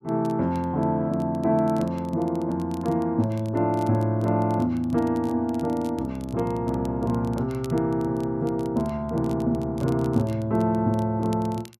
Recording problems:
crackle; vinyl, SNR 27 dB

